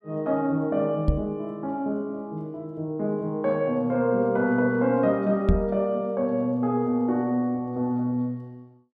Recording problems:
microphone bump; at 1 s and at 5.5 s; peak +7 dB vs average level

